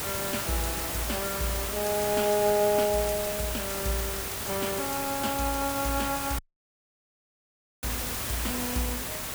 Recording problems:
background hiss; slope -2 dB per octave, SNR 1 dB
dropout; at 6.5 s for 1.5 s

